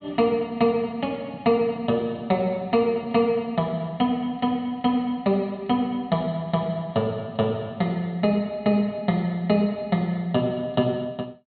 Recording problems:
treble cut off; nothing above 4.4 kHz

